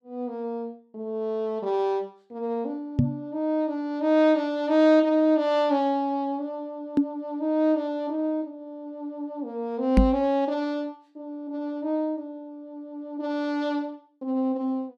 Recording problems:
microphone thump; at 3 s, at 7 s and at 10 s; peak +10 dB vs average level

